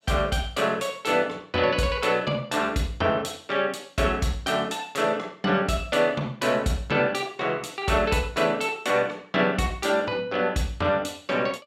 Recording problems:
none

